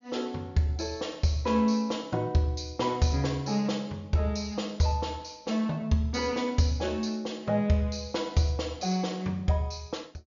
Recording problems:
treble missing; nothing above 7 kHz

